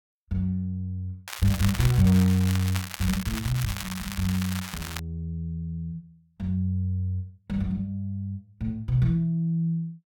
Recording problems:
crackling; from 1.5 to 5 s; loose cable, SNR 8 dB

